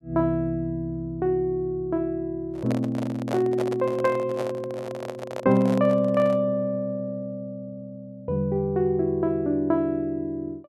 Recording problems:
microphone handling noise; from 2.5 to 6.5 s; peak -2 dB vs average level

